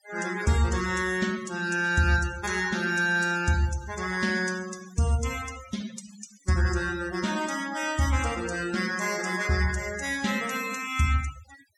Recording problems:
denoising artefacts; signal-to-artefact ratio 14 dB

